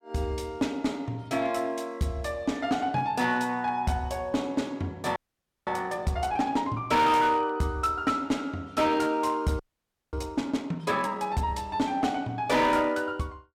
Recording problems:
distorted audio; hard clipping, uneven, signal-to-distortion ratio 11 dB
audio freezing; at 5 s for 0.5 s and at 9.5 s for 0.5 s

